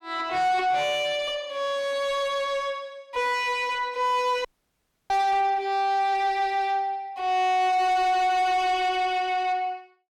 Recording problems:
distortion; soft clipping, signal-to-distortion ratio 7 dB
dropout; at 4.5 s for 0.5 s

